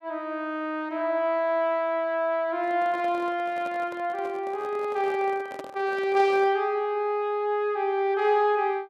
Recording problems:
handling noise; from 2.5 to 6.5 s; peak -8 dB vs average level

